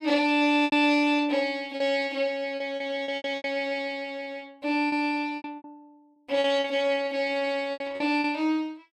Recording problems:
lost packets; 10% of the sound replaced, filled with repeated pitch periods

